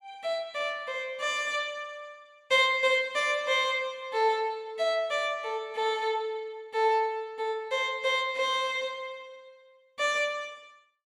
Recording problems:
none

